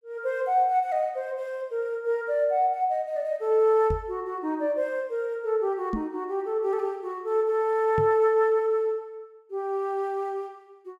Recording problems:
microphone bump; at 4 s, at 6 s and at 8 s; peak 0 dB vs average level

